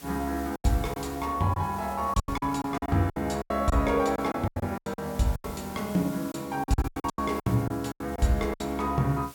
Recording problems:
background hiss; slope 0 dB per octave, SNR 19 dB
packet loss; 15% of the sound replaced, filled with silence

